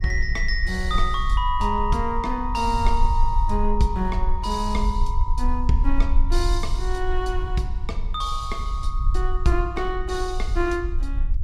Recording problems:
low-frequency rumble; below 48 Hz, strongest tone 20 Hz, SNR 1 dB

